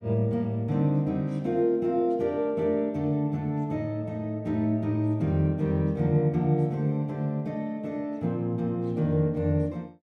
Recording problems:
none

